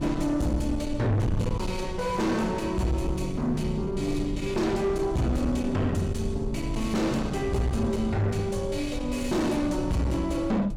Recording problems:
distorted audio; soft clipping, signal-to-distortion ratio 7 dB
wind noise; below 160 Hz, SNR 8 dB

